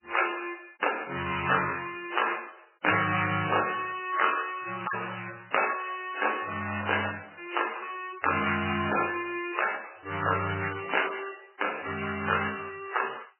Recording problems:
codec artefacts; MP3, then MP3, log-spectral distance 9 dB, nothing above 2.8 kHz

